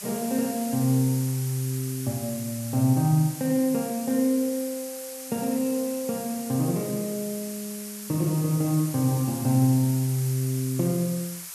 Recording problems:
hiss; SNR 11 dB

